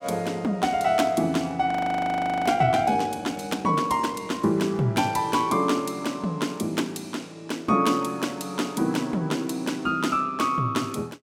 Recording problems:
frozen audio; at 1.5 s for 1 s

